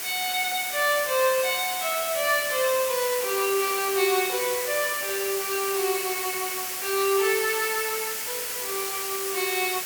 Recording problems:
background hiss; slope +1 dB per octave, SNR 3 dB

